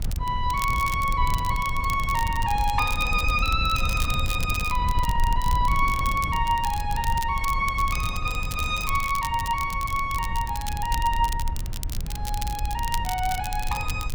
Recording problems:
wind on the microphone; below 80 Hz, SNR 5 dB
crackling; vinyl, SNR 12 dB

